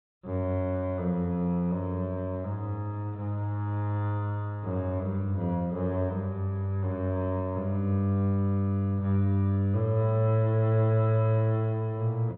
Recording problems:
treble missing; nothing above 4.1 kHz

